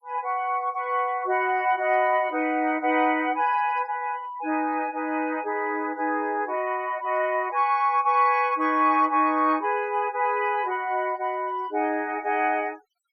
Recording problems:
noise reduction artefacts; signal-to-artefact ratio 28 dB

